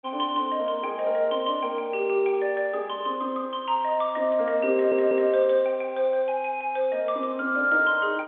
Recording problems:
phone line; 260 Hz to 3.5 kHz, G.711
audio stuttering; at 4.5 s

